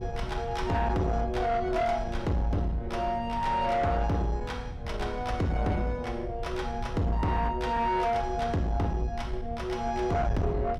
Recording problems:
distortion; soft clipping, signal-to-distortion ratio 10 dB
wind noise; below 120 Hz, SNR 9 dB

